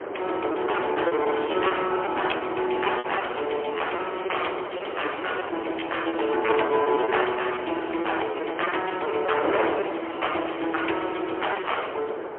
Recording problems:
phone line; 300 Hz to 3.2 kHz, AMR-NB, then MP3
wind on the microphone; below 950 Hz, SNR 6 dB
lost packets; 15% of the sound replaced, filled with repeated pitch periods

